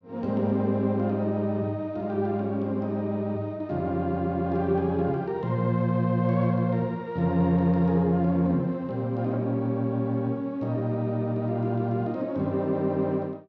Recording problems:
none

